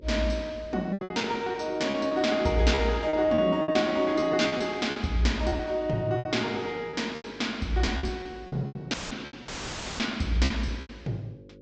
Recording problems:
treble missing; nothing above 8 kHz
hum; 50 Hz, harmonics up to 600 Hz, SNR 23 dB
lost packets; 13% of the sound replaced, filled with repeated pitch periods
dropout; at 9 s and at 9.5 s for 0.5 s; filled with static

